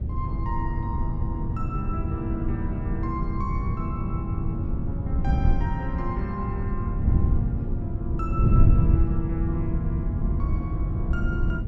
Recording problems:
wind noise; below 120 Hz, SNR -7 dB

